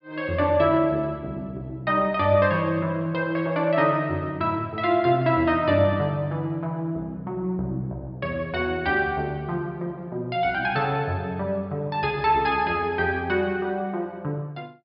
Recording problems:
low-pass filter; nothing above 5.5 kHz

